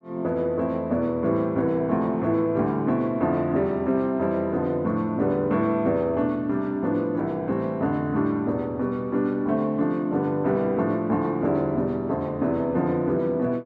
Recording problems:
none

